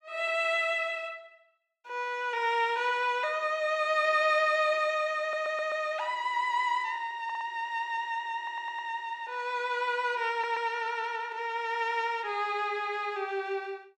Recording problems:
audio stuttering; 4 times, first at 5 s

